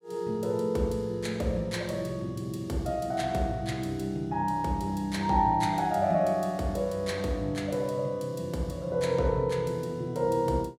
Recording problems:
none

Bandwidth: 16 kHz